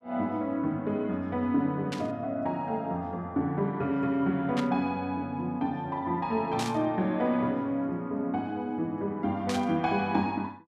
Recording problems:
static burst; 4 times, first at 2 s; peak -2 dB vs average level

